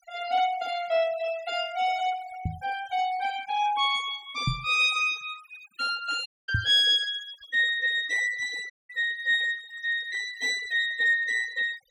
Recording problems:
denoising artefacts; signal-to-artefact ratio 19 dB
microphone thump; at 2.5 s, at 4.5 s and at 6.5 s; peak +2 dB vs average level
audio cutting out; at 6.5 s and at 8.5 s

